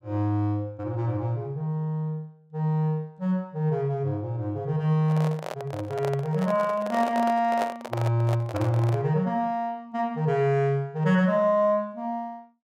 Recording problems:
microphone handling noise; from 5 to 9 s; peak 0 dB vs average level

